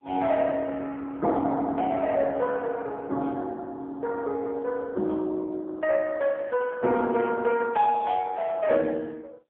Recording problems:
telephone audio; 240 Hz to 2.5 kHz, AMR-NB

